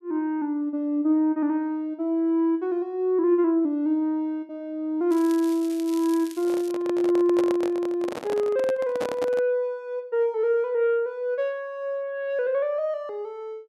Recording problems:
crackling; from 5 to 6.5 s; loose cable, SNR 19 dB
microphone handling noise; from 6.5 to 9.5 s; peak -2 dB vs average level

